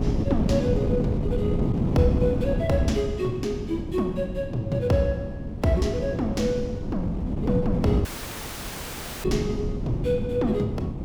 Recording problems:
wind on the microphone; below 250 Hz, SNR 2 dB
dropout; at 8 s for 1 s

